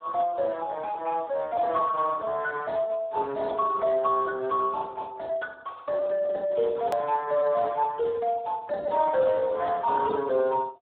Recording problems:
phone line; 320 Hz to 2 kHz, Speex
hard cut with a click; at 7 s

